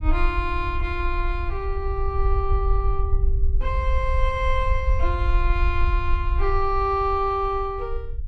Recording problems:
rumble; below 58 Hz, SNR 0 dB

